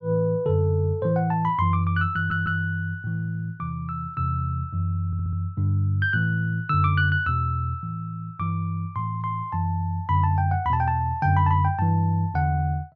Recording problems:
audio stuttering; at 2 s and at 5 s

